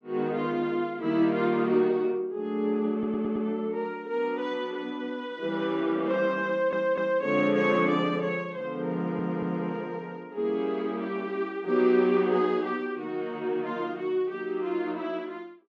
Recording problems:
audio stuttering; at 3 s, at 6.5 s and at 9 s

